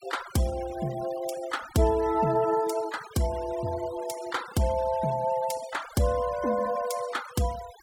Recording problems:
noise reduction artefacts; signal-to-artefact ratio 17 dB

